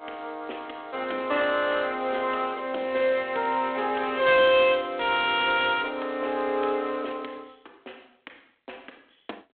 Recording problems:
telephone audio; 240 Hz to 3.6 kHz, G.726

